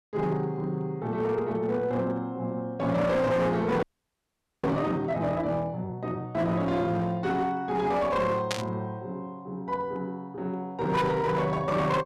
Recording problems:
distorted audio; hard clipping, uneven, signal-to-distortion ratio 10 dB
frozen audio; at 4 s for 1 s
burst of static; at 8.5 s; peak +2 dB vs average level

